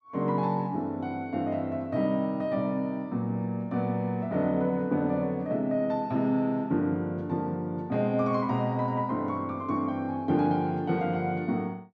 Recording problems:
none

